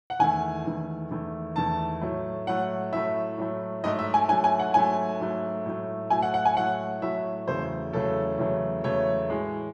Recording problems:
none

